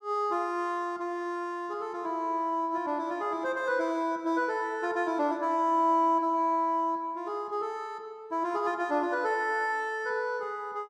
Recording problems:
none

